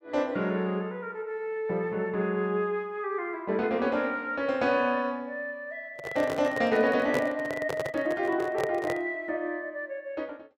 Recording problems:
microphone handling noise; from 6 to 9 s; peak +3 dB vs average level

